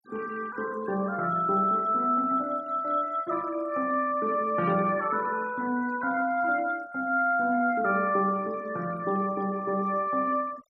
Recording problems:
noise reduction artefacts; signal-to-artefact ratio 22 dB

